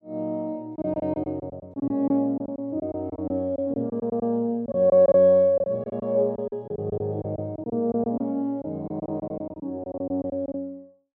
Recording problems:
lost packets; 13% of the sound replaced, filled with silence

